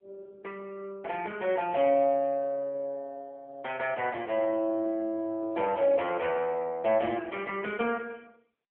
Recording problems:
phone line; 280 Hz to 3.1 kHz, AMR-NB

